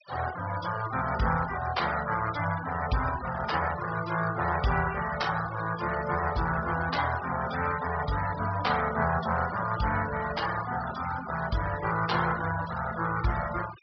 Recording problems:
low-pass filter; nothing above 5.5 kHz
noise reduction artefacts; signal-to-artefact ratio 12 dB

